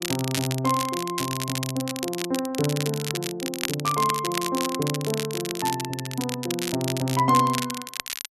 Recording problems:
crackling; vinyl, SNR 5 dB

